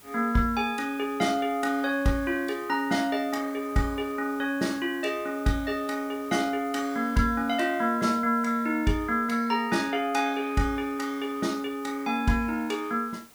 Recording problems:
background hiss; slope -2 dB per octave, SNR 23 dB

